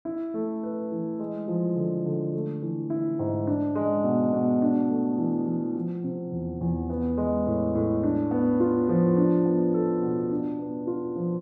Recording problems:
none

